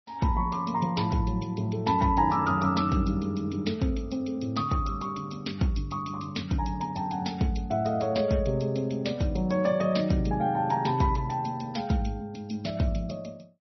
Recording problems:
lossy compression; MP3, log-spectral distance 4 dB, nothing above 5.8 kHz

